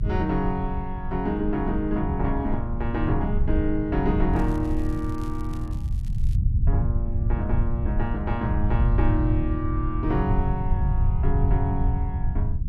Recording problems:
low-frequency rumble; below 92 Hz, SNR -1 dB
crackling; from 4.5 to 6.5 s; loose cable, SNR 25 dB

